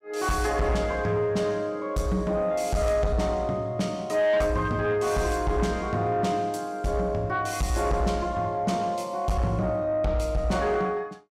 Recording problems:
distorted audio; soft clipping, signal-to-distortion ratio 11 dB

